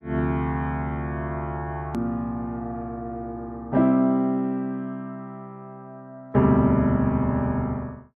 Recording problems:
hard cut with a click; at 2 s

